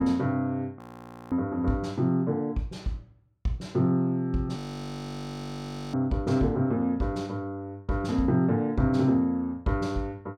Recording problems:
audio freezing; at 1 s for 0.5 s and at 4.5 s for 1.5 s

